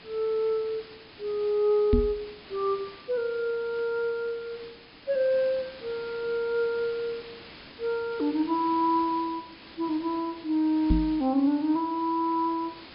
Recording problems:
treble missing; nothing above 5.5 kHz
hiss; SNR 19 dB
knock on the microphone; at 2 s and at 11 s; peak +7 dB vs average level

